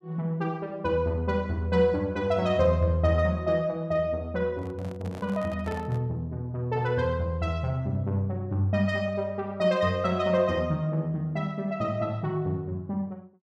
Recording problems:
microphone handling noise; from 4.5 to 6 s; peak -8 dB vs average level

